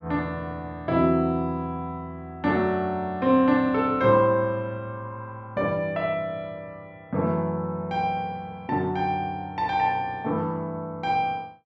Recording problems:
none

